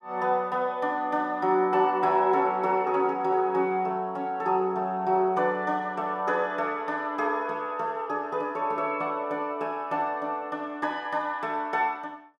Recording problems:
none

